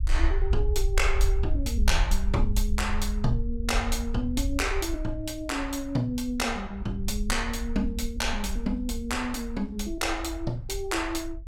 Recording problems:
rumble; below 58 Hz, SNR 2 dB

